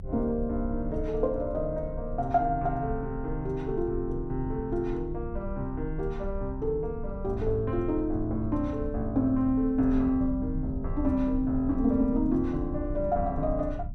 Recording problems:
rumble; below 76 Hz, strongest tone 28 Hz, SNR 9 dB

